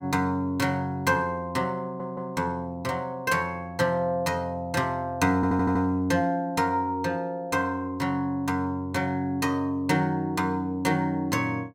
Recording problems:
audio stuttering; at 2 s and at 5.5 s

